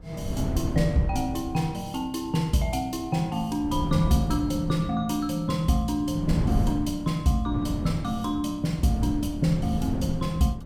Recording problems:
wind noise; below 190 Hz, SNR 5 dB

